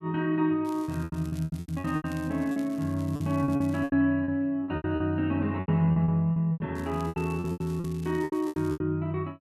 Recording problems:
lost packets; 18% of the sound replaced, filled with repeated pitch periods
crackle; from 0.5 to 4 s and from 7 to 8.5 s; loose cable, SNR 24 dB

